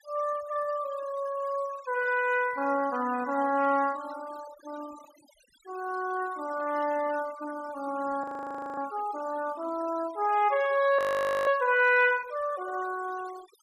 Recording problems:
denoising artefacts; signal-to-artefact ratio 20 dB
audio freezing; at 8 s for 0.5 s and at 11 s

